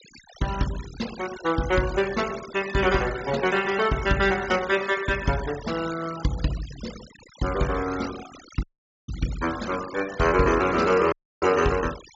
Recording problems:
treble missing; nothing above 7.3 kHz
denoising artefacts; signal-to-artefact ratio 14 dB
dropout; at 8.5 s and at 11 s

